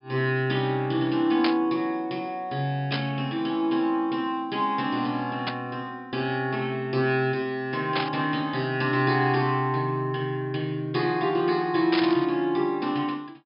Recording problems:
treble cut off; nothing above 5.5 kHz
static burst; 5 times, first at 1.5 s; peak +2 dB vs average level

